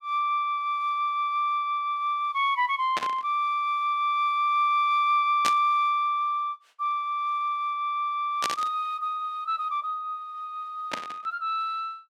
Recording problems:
static burst; 4 times, first at 3 s; peak +2 dB vs average level

